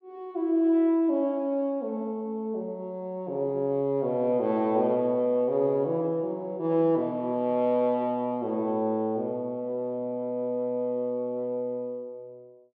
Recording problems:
none

